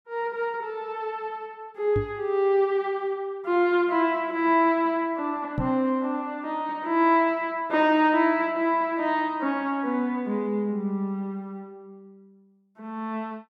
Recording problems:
microphone bump; at 2 s and at 5.5 s; peak 0 dB vs average level

